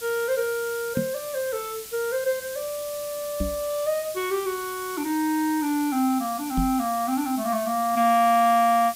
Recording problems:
background hiss; SNR 12 dB
knock on the microphone; at 1 s, at 3.5 s and at 6.5 s; peak +1 dB vs average level

